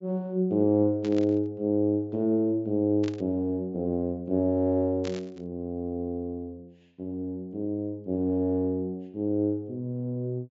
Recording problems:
low-pass filter; nothing above 8 kHz
burst of static; at 1 s, at 3 s and at 5 s; peak -9 dB vs average level

